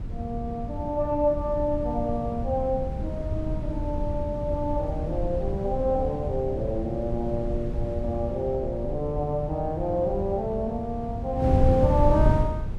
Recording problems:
wind noise; below 140 Hz, SNR 3 dB

